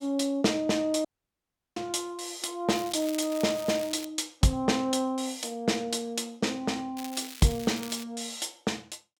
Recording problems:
dropout; at 1 s for 0.5 s
crackle; from 2.5 to 4 s and from 7 to 8 s; loose cable, SNR 13 dB

